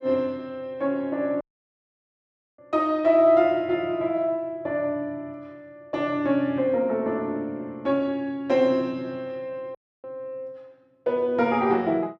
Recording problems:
audio cutting out; at 1.5 s for 1 s and at 10 s

